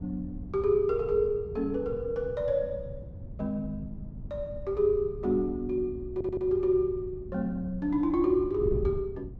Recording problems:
wind on the microphone; below 140 Hz, SNR 12 dB
stutter; at 6 s

